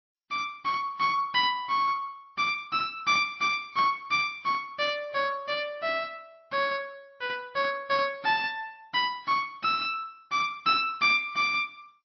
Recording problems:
lossy compression; MP2, then MP3, log-spectral distance 3 dB, nothing above 4.9 kHz

